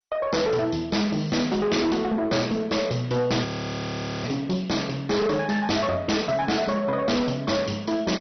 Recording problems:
codec artefacts; MP2, log-spectral distance 5 dB, nothing above 6 kHz
distorted audio; soft clipping, signal-to-distortion ratio 8 dB
frozen audio; at 3.5 s for 1 s

